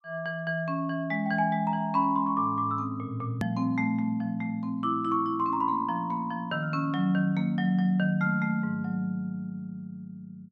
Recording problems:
hard cut with a click; at 3.5 s

